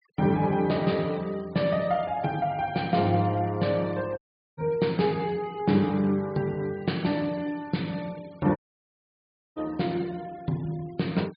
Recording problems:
treble missing; nothing above 4.9 kHz
noise reduction artefacts; signal-to-artefact ratio 25 dB
dropout; at 4 s and at 8.5 s for 1 s

